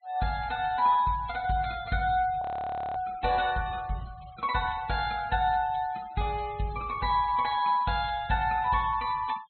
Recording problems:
treble cut off; nothing above 4.2 kHz
denoising artefacts; signal-to-artefact ratio 21 dB
audio freezing; at 2.5 s for 0.5 s

